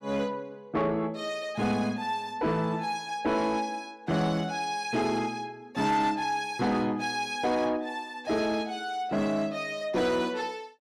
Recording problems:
distorted audio; soft clipping, signal-to-distortion ratio 12 dB

